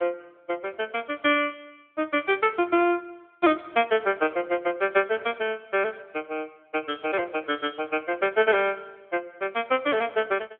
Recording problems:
phone line; 260 Hz to 3.3 kHz, AMR-NB

